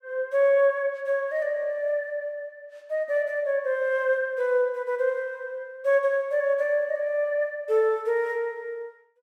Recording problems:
none

